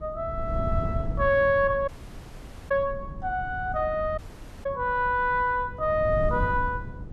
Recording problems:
wind noise; below 130 Hz, SNR 9 dB
audio cutting out; at 2 s for 1 s and at 4 s

